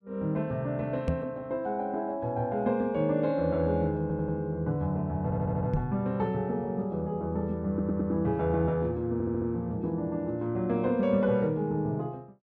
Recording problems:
microphone thump; at 1 s and at 5.5 s; peak +4 dB vs average level
audio stuttering; 4 times, first at 4 s

